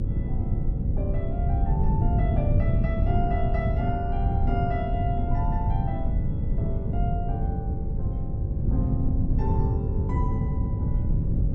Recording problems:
hum; 50 Hz, harmonics up to 550 Hz, SNR 11 dB
wind noise; below 130 Hz, SNR -8 dB

